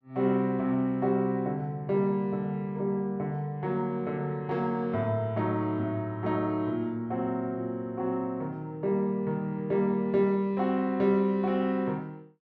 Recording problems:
none

